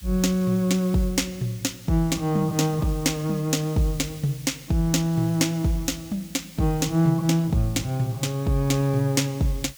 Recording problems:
hiss; SNR 20 dB

